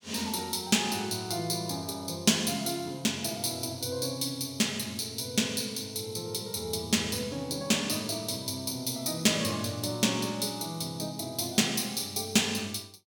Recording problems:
none

